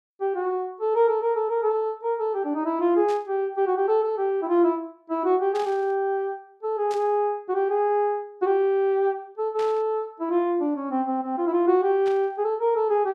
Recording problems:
burst of static; 5 times, first at 3 s; peak -13 dB vs average level

